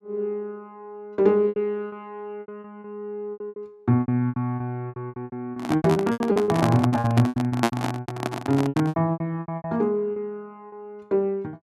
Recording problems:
lost packets; 18% of the sound replaced, filled with repeated pitch periods
microphone handling noise; from 5.5 to 9 s; peak +8 dB vs average level

